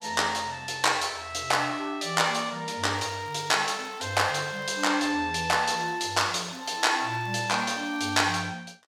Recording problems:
crackle; from 3 to 5 s and from 5.5 to 8.5 s; loose cable, SNR 29 dB

